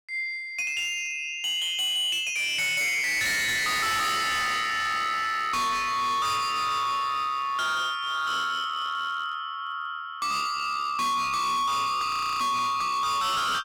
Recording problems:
distorted audio; hard clipping, signal-to-distortion ratio 7 dB
frozen audio; at 12 s

